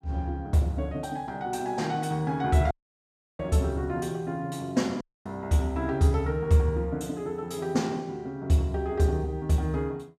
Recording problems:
audio cutting out; at 2.5 s for 0.5 s and at 5 s

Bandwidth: 14.5 kHz